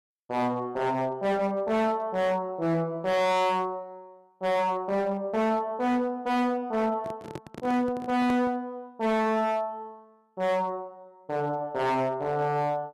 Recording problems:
distorted audio; hard clipping, signal-to-distortion ratio 7 dB
handling noise; from 7 to 8.5 s; peak -4 dB vs average level

